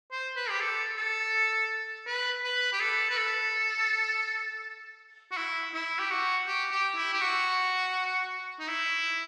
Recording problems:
none

